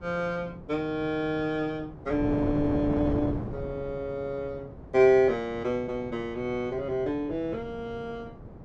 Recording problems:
wind noise; below 430 Hz, SNR 10 dB

